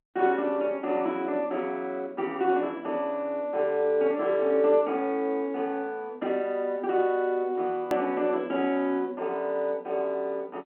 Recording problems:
phone line; 220 Hz to 3.3 kHz, G.711
click at an edit; at 8 s

